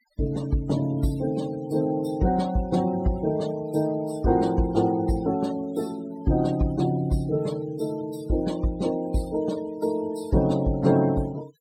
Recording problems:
denoising artefacts; signal-to-artefact ratio 21 dB

